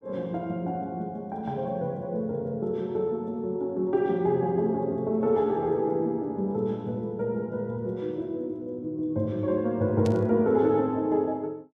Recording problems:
burst of static; at 10 s; peak -9 dB vs average level

